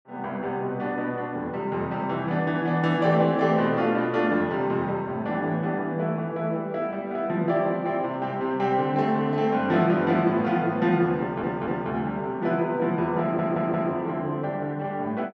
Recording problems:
stutter; at 11 s and at 13 s

